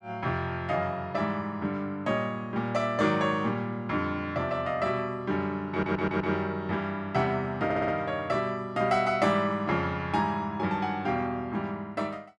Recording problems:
stutter; at 5.5 s and at 7.5 s

